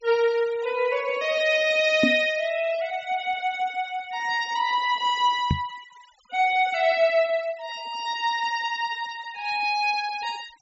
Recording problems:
treble missing; nothing above 8 kHz
denoising artefacts; signal-to-artefact ratio 21 dB
knock on the microphone; at 2 s and at 5.5 s; peak +5 dB vs average level

